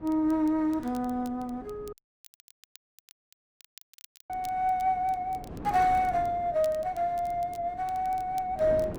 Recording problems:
wind noise; below 460 Hz, SNR 17 dB
crackle; vinyl, SNR 26 dB
dropout; at 2 s for 2.5 s

